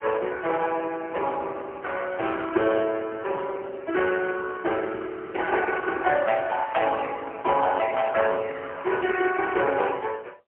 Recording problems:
telephone audio; 300 Hz to 3.2 kHz, AMR-NB, then MP3

